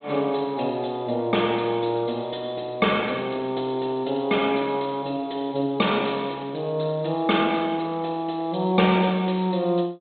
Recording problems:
treble cut off; nothing above 4 kHz

